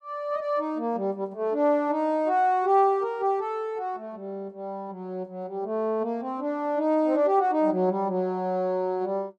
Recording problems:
none

